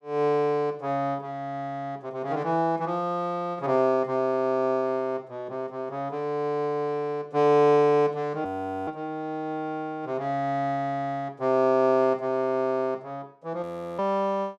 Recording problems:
frozen audio; at 8.5 s and at 14 s

